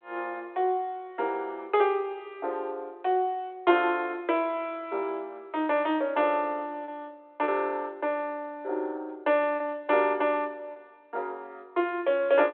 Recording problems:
phone line; 280 Hz to 3.6 kHz, G.726
packet loss; 1.3% of the sound replaced, filled with repeated pitch periods

